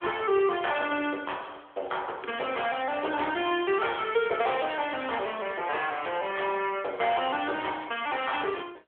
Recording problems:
phone line; 320 Hz to 3.3 kHz, AMR-NB

